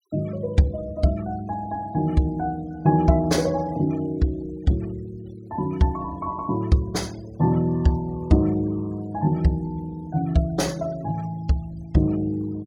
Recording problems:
denoising artefacts; signal-to-artefact ratio 27 dB

